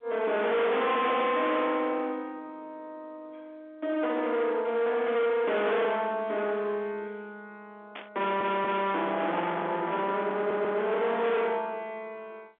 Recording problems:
telephone audio; 340 Hz to 3.5 kHz, G.711
distortion; hard clipping, signal-to-distortion ratio 7 dB
static burst; at 8 s; peak -9 dB vs average level
audio stuttering; at 8 s and at 10 s

